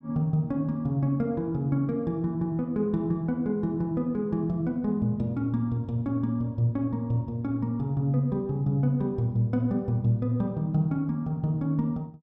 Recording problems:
none

